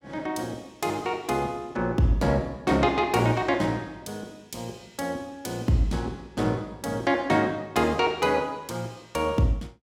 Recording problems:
none

